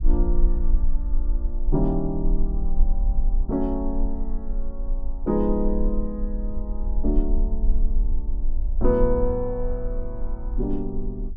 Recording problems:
low-frequency rumble; below 40 Hz, strongest tone 20 Hz, SNR 0 dB

